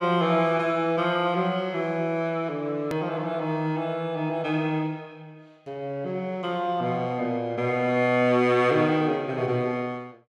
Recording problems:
click at an edit; at 3 s

